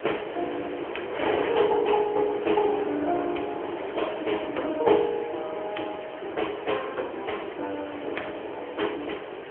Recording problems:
telephone audio; 300 Hz to 3.3 kHz, AMR-NB
wind noise; below 1.6 kHz, SNR 8 dB

